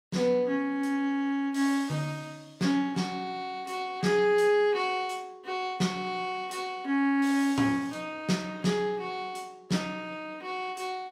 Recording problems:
none

